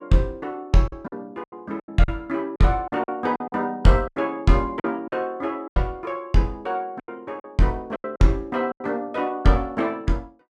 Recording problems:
lost packets; 10% of the sound replaced, filled with silence

